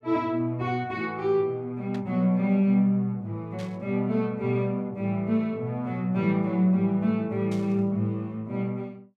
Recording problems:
burst of static; at 2 s, at 3.5 s and at 7.5 s; peak -13 dB vs average level

